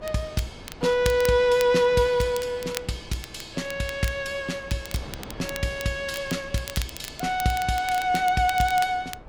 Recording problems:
wind noise; below 610 Hz, SNR 19 dB
crackle; vinyl, SNR 14 dB

